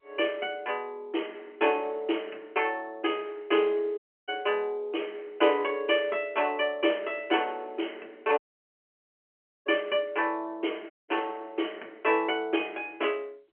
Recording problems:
phone line; 260 Hz to 3.1 kHz, G.711
dropout; at 4 s, at 8.5 s for 1.5 s and at 11 s

